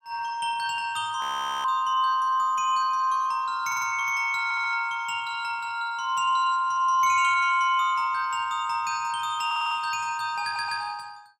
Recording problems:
frozen audio; at 1 s
audio stuttering; 4 times, first at 3.5 s

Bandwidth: 16.5 kHz